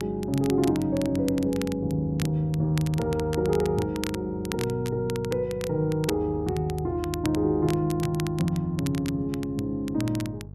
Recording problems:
hum; 50 Hz, harmonics up to 500 Hz, SNR 14 dB
crackle; vinyl, SNR 15 dB

